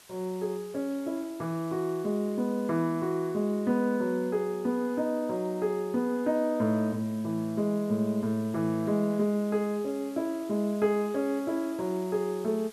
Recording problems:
background hiss; slope 0 dB per octave, SNR 23 dB

